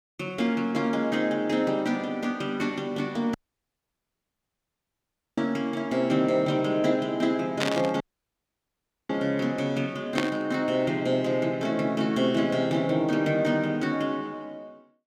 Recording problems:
dropout; at 3.5 s for 2 s and at 8 s for 1 s
burst of static; at 7.5 s and at 10 s; peak +3 dB vs average level

